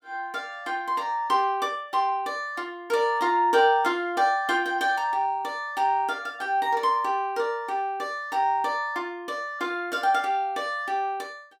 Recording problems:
none

